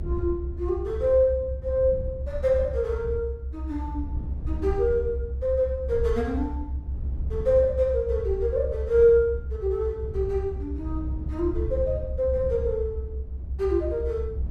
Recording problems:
rumble; below 72 Hz, strongest tone 68 Hz, SNR 7 dB

